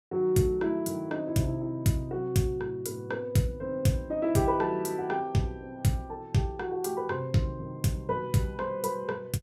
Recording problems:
none

